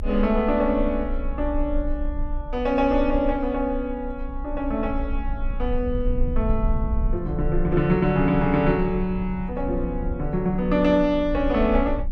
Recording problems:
rumble; below 56 Hz, strongest tone 22 Hz, SNR 7 dB

